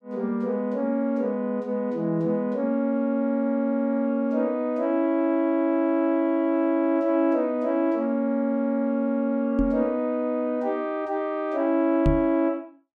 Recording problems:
microphone thump; at 9.5 s and at 12 s; peak +3 dB vs average level

